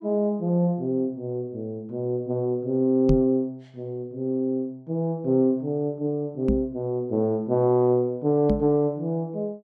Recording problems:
microphone bump; at 3 s, at 6.5 s and at 8.5 s; peak +6 dB vs average level

